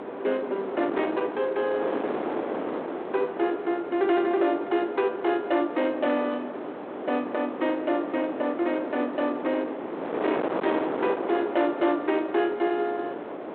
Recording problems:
phone line; 220 Hz to 3.6 kHz, G.726
distortion; soft clipping, signal-to-distortion ratio 10 dB
wind noise; below 810 Hz, SNR 6 dB

